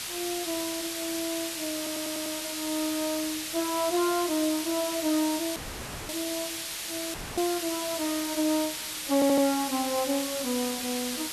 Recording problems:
background hiss; slope +2 dB per octave, SNR 3 dB
audio stuttering; at 2 s and at 9 s
dropout; at 5.5 s for 0.5 s and at 7 s

